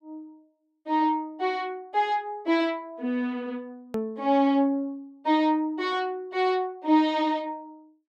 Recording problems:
edit click; at 4 s

